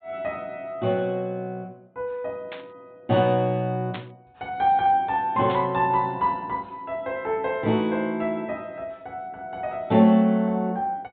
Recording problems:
treble cut off; nothing above 4 kHz
static burst; at 2.5 s, at 4 s and at 5.5 s; peak -8 dB vs average level

